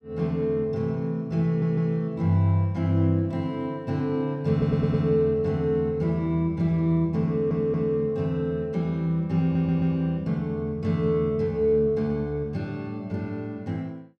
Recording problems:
audio stuttering; 4 times, first at 1.5 s

